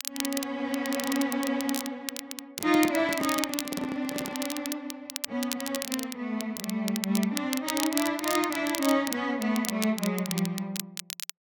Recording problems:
crackling; vinyl, SNR 6 dB
handling noise; from 2.5 to 4.5 s; peak -3 dB vs average level

